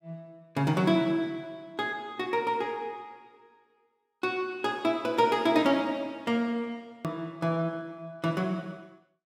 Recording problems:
hard cut with a click; at 7 s

